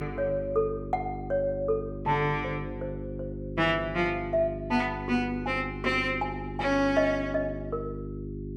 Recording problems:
hum; 50 Hz, harmonics up to 400 Hz, SNR 9 dB

